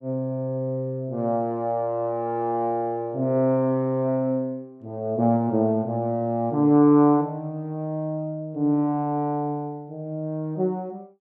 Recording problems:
none

